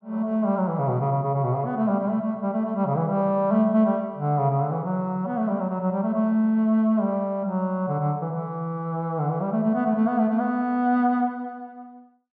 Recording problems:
none

